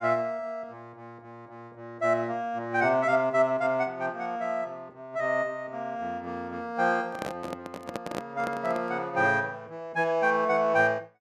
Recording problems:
microphone handling noise; from 7 to 9 s; peak -2 dB vs average level

